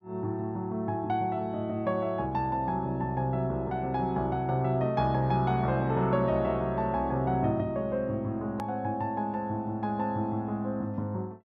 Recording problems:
hard cut with a click; at 8.5 s

